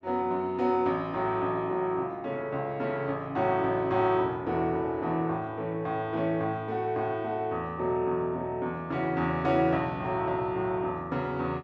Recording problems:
none

